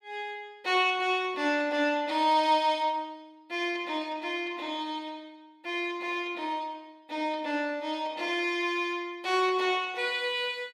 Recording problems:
none

